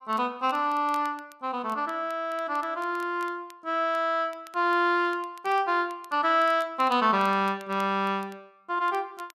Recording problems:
crackling; vinyl, SNR 27 dB

